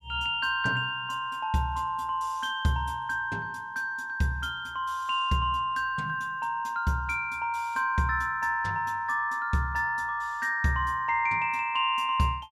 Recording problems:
none

